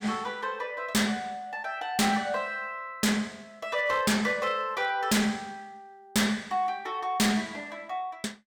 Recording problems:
distortion; hard clipping, signal-to-distortion ratio 6 dB

